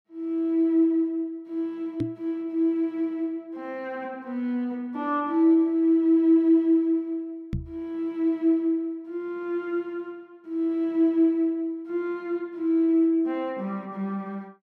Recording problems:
microphone bump; at 2 s and at 7.5 s; peak 0 dB vs average level

